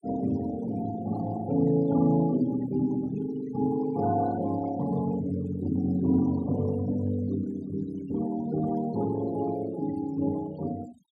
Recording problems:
denoising artefacts; signal-to-artefact ratio 20 dB

